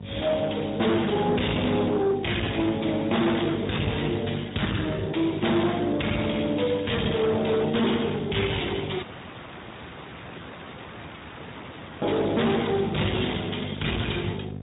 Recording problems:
low-pass filter; nothing above 3.8 kHz
codec artefacts; Speex, log-spectral distance 9 dB
distortion; hard clipping, signal-to-distortion ratio 5 dB
hum; 50 Hz, harmonics up to 750 Hz, SNR 11 dB
audio cutting out; at 9 s for 3 s

